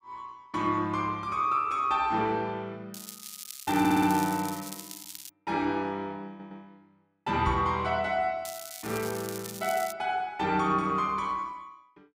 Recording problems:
crackle; from 3 to 5.5 s and from 8.5 to 10 s; loose cable, SNR 12 dB
audio stuttering; at 4 s and at 6.5 s
microphone bump; at 7.5 s; peak -2 dB vs average level

